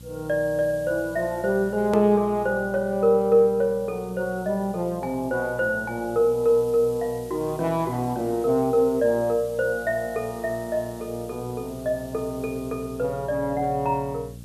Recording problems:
electrical hum; 60 Hz, harmonics up to 600 Hz, SNR 19 dB
hiss; slope +2 dB per octave, SNR 24 dB
edit click; at 2 s

